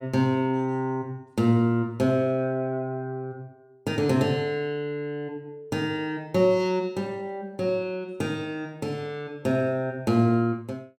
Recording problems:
none

